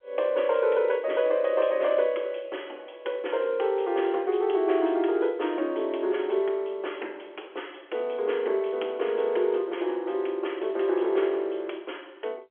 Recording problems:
telephone audio; 280 Hz to 3.4 kHz, G.711

